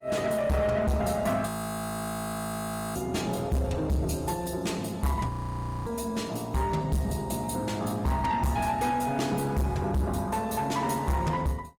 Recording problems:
lossy codec; Opus, log-spectral distance 4 dB, nothing above 19 kHz
distortion; soft clipping, signal-to-distortion ratio 7 dB
frozen audio; at 1.5 s for 1.5 s and at 5.5 s for 0.5 s

